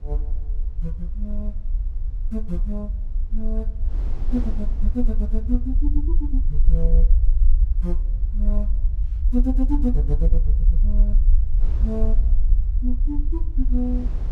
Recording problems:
rumble; below 48 Hz, SNR -7 dB
wind on the microphone; below 110 Hz, SNR 13 dB

